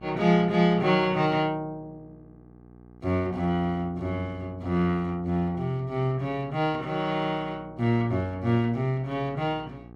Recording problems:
mains hum; 60 Hz, harmonics up to 1.3 kHz, SNR 22 dB

